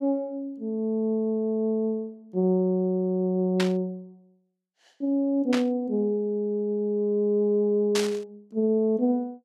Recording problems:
burst of static; at 3.5 s, at 5.5 s and at 8 s; peak +1 dB vs average level

